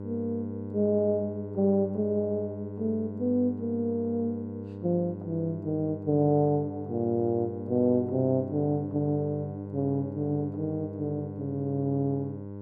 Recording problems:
hum; 50 Hz, harmonics up to 1 kHz, SNR 10 dB

